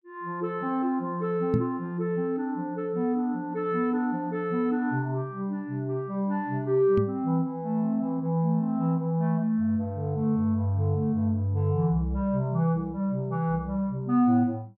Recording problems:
microphone thump; at 1.5 s and at 7 s; peak +5 dB vs average level

